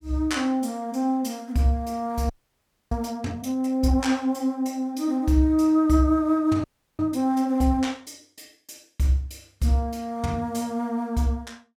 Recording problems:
audio freezing; at 2.5 s for 0.5 s and at 6.5 s

